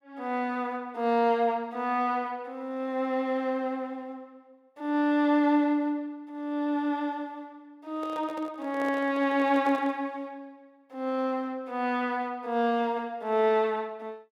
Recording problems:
handling noise; from 8 to 10 s; peak -8 dB vs average level

